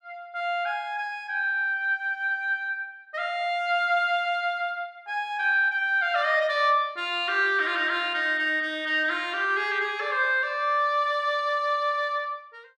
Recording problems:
none

